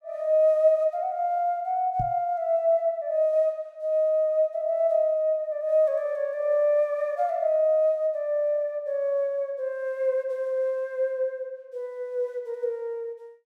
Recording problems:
microphone bump; at 2 s; peak -4 dB vs average level

